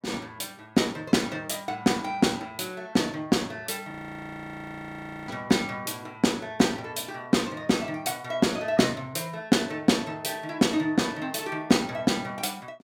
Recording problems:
frozen audio; at 4 s for 1.5 s

